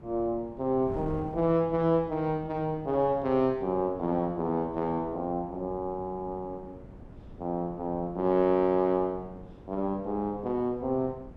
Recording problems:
wind noise; below 320 Hz, SNR 18 dB

